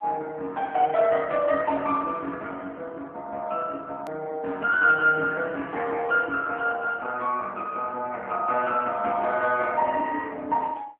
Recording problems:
phone line; 300 Hz to 3.3 kHz, AMR-NB
hard cut with a click; at 4 s

